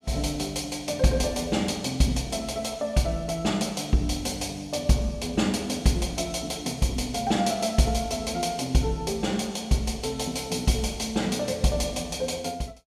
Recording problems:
none

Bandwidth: 14.5 kHz